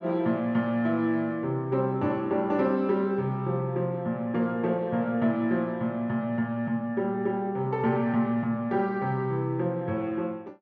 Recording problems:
treble cut off; nothing above 8 kHz

